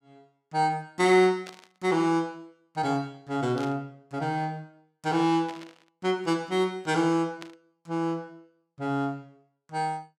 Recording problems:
burst of static; 4 times, first at 1.5 s; peak -10 dB vs average level

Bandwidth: 17 kHz